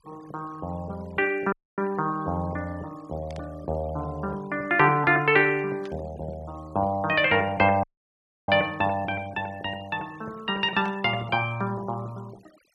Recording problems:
noise reduction artefacts; signal-to-artefact ratio 25 dB
audio cutting out; at 1.5 s and at 8 s for 0.5 s
static burst; at 3.5 s, at 6 s and at 11 s; peak -17 dB vs average level

